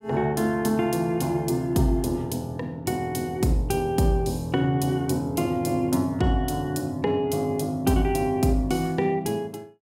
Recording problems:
none

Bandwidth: 16 kHz